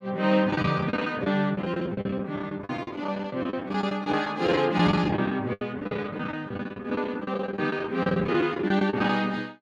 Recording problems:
lost packets; 19% of the sound replaced, filled with the last packet

